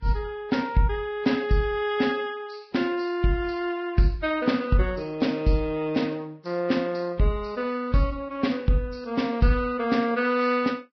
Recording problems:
lossy compression; Vorbis, log-spectral distance 3 dB, nothing above 5.5 kHz

